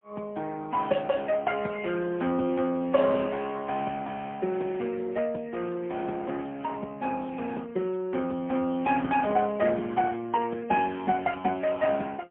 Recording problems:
telephone audio; 190 Hz to 3.3 kHz, AMR-NB, then MP3

